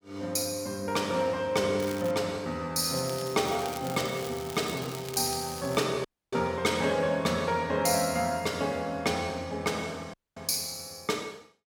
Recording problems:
crackle; at 2 s and from 3 to 6 s; loose cable, SNR 14 dB
audio cutting out; at 6 s and at 10 s

